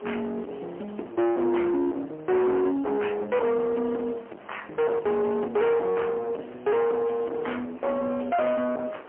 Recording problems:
phone line; 260 Hz to 3.2 kHz, AMR-NB, then MP3
distortion; soft clipping, signal-to-distortion ratio 7 dB
hiss; SNR 21 dB

